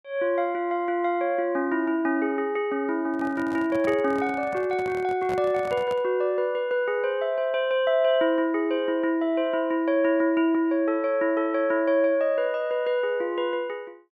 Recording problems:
handling noise; from 3 to 6 s; peak -7 dB vs average level

